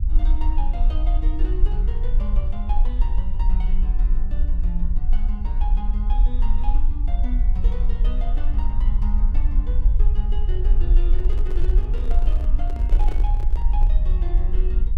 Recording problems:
rumble; below 44 Hz, strongest tone 22 Hz, SNR -13 dB
handling noise; from 11 to 14 s; peak +3 dB vs average level

